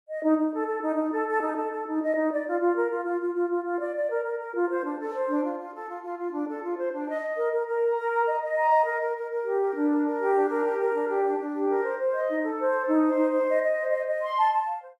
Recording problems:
none

